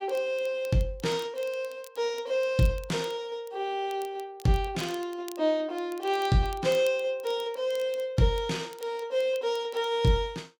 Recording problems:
crackling; vinyl, SNR 23 dB

